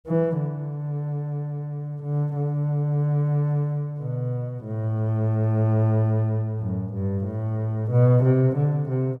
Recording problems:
none

